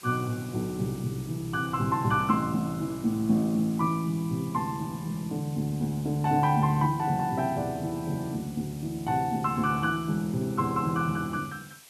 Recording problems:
hiss; slope +1 dB per octave, SNR 20 dB

